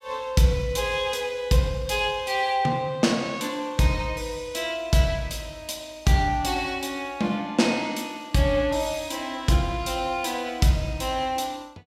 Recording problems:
none

